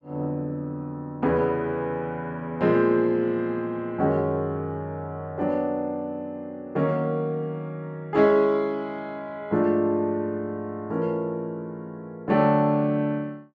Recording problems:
none

